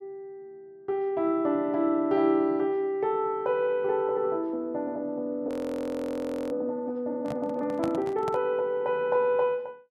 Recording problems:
audio freezing; at 5.5 s for 1 s
microphone handling noise; from 7 to 8.5 s; peak -3 dB vs average level

